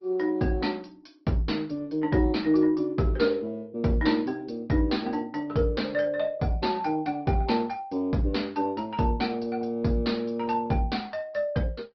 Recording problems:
treble missing; nothing above 5.5 kHz
codec artefacts; Opus, log-spectral distance 3 dB

